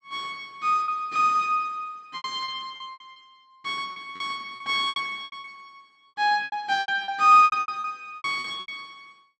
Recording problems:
lost packets; 15% of the sound replaced, filled with repeated pitch periods

